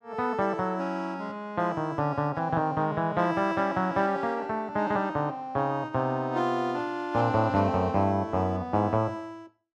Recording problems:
none

